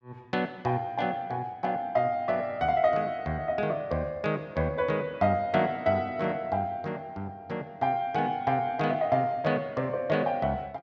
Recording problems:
none

